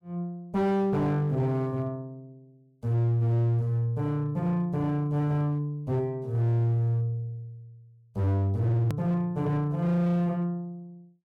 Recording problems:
distortion; hard clipping, signal-to-distortion ratio 11 dB
hard cut with a click; at 9 s

